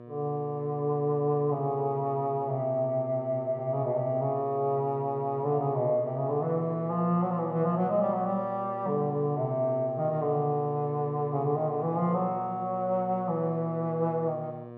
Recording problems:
hum; 60 Hz, harmonics up to 1.7 kHz, SNR 15 dB

